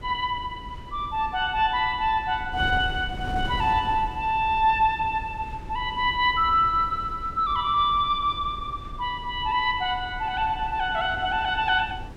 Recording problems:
wind noise; below 190 Hz, SNR 14 dB

